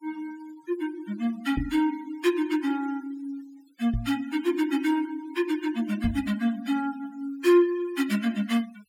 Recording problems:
denoising artefacts; signal-to-artefact ratio 20 dB
microphone bump; at 1.5 s, at 4 s and at 6 s; peak +1 dB vs average level

